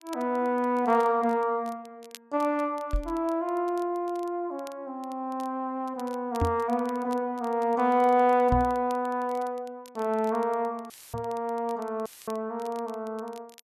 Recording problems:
crackle; vinyl, SNR 26 dB
microphone bump; 4 times, first at 3 s; peak +4 dB vs average level
audio cutting out; at 11 s and at 12 s; filled with static

